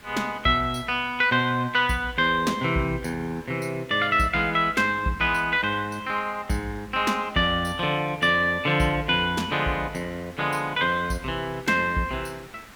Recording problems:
hiss; SNR 23 dB

